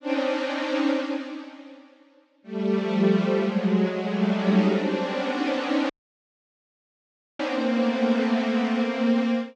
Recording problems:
audio cutting out; at 6 s for 1.5 s

